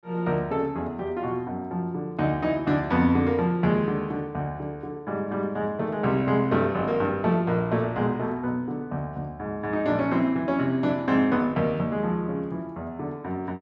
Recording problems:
none

